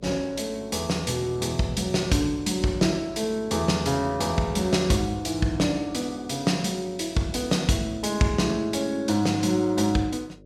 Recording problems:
electrical hum; 50 Hz, harmonics up to 600 Hz, SNR 26 dB

